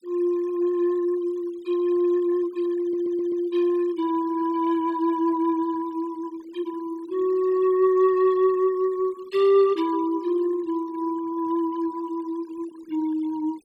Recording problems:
noise reduction artefacts; signal-to-artefact ratio 25 dB
audio stuttering; at 3 s

